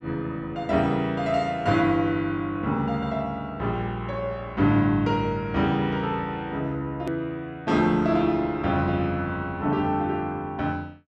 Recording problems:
hard cut with a click; at 7 s

